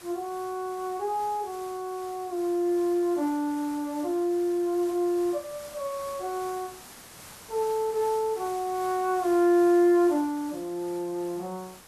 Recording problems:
background hiss; slope -2 dB per octave, SNR 19 dB

